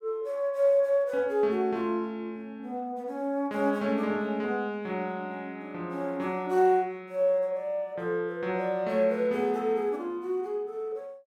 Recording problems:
none

